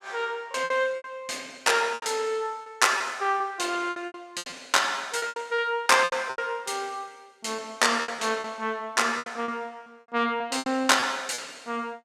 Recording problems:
lost packets; 12% of the sound replaced, filled with repeated pitch periods

